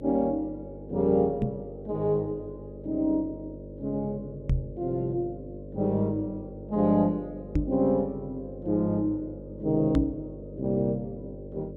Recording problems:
hum; 50 Hz, harmonics up to 600 Hz, SNR 13 dB
knock on the microphone; 4 times, first at 1.5 s; peak +6 dB vs average level

